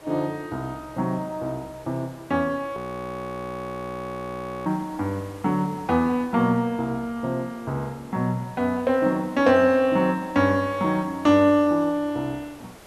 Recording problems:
background hiss; SNR 23 dB
frozen audio; at 3 s for 2 s

